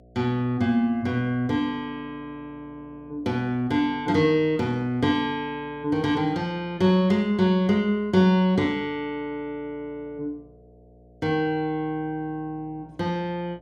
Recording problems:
hum; 60 Hz, harmonics up to 720 Hz, SNR 28 dB

